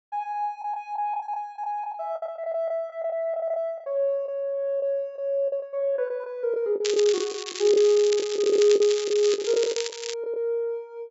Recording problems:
treble cut off; nothing above 8 kHz
packet loss; 12% of the sound replaced, filled with the last packet
crackle; from 7 to 10 s; loose cable, SNR 8 dB

